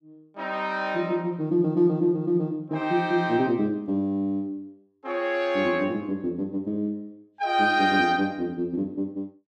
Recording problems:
none

